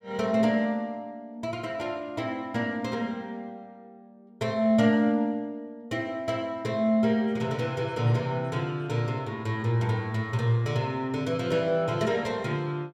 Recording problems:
none

